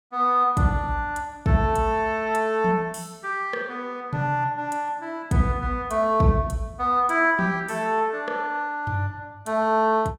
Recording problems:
none

